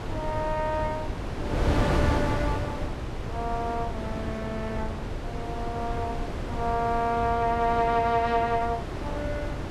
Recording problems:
wind noise; below 490 Hz, SNR 3 dB

